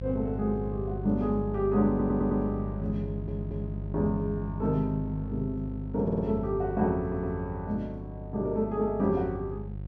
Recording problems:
hum; 50 Hz, harmonics up to 550 Hz, SNR 7 dB
audio stuttering; 4 times, first at 2 s

